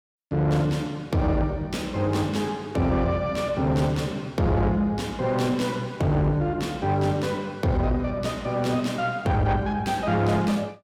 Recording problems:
distorted audio; soft clipping, signal-to-distortion ratio 10 dB

